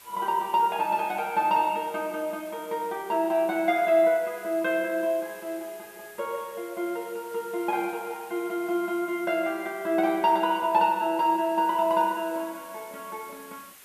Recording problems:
background hiss; SNR 22 dB

